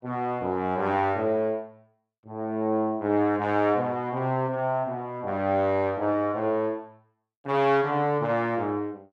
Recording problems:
none

